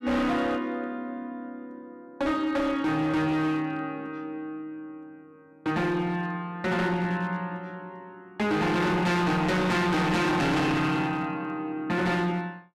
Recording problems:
distortion; hard clipping, signal-to-distortion ratio 6 dB

